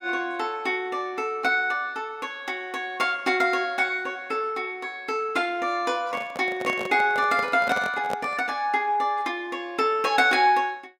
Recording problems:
handling noise; from 6 to 8.5 s; peak -2 dB vs average level

